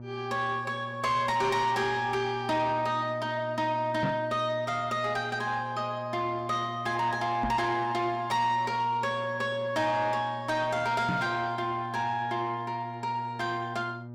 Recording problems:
distortion; soft clipping, signal-to-distortion ratio 11 dB
hum; 60 Hz, harmonics up to 960 Hz, SNR 13 dB
microphone bump; at 4 s, at 7.5 s and at 11 s; peak +3 dB vs average level

